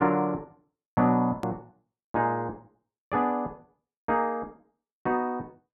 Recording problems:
hard cut with a click; at 1.5 s

